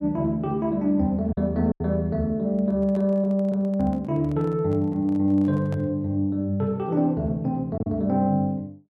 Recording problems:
packet loss; 1.9% of the sound replaced, filled with silence
microphone handling noise; from 2.5 to 6 s; peak -12 dB vs average level

